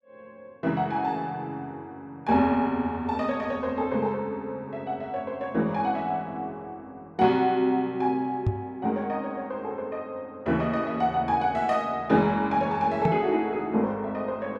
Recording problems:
microphone bump; at 8.5 s and at 13 s; peak +5 dB vs average level

